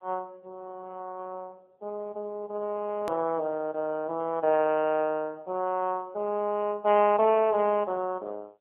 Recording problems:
telephone audio; 240 Hz to 3.3 kHz, AMR-NB
hard cut with a click; at 3 s

